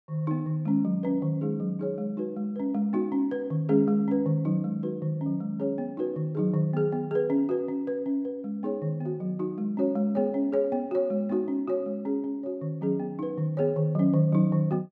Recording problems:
none

